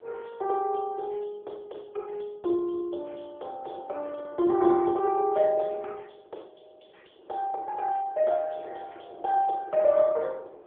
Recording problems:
telephone audio; 300 Hz to 3.1 kHz, AMR-NB
wind on the microphone; below 610 Hz, SNR 22 dB

